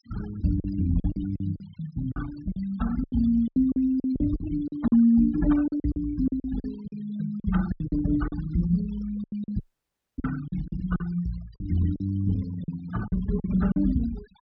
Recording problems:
treble missing; nothing above 5.5 kHz
denoising artefacts; signal-to-artefact ratio 19 dB
packet loss; 13% of the sound replaced, filled with silence
dropout; at 9.5 s for 0.5 s

